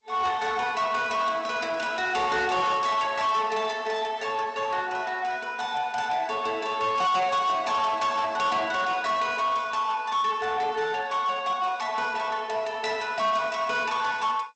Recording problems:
lossy codec; Opus, then G.722, log-spectral distance 3 dB, nothing above 7.8 kHz
distorted audio; soft clipping, signal-to-distortion ratio 12 dB

